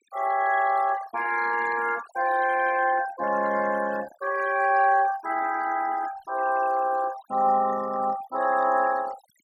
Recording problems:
noise reduction artefacts; signal-to-artefact ratio 15 dB

